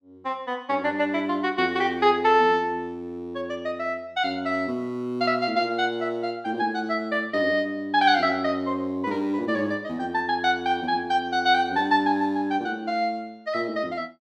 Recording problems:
none

